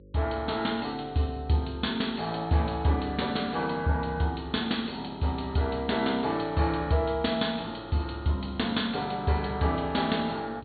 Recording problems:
low-pass filter; nothing above 4.5 kHz
hum; 50 Hz, harmonics up to 550 Hz, SNR 24 dB

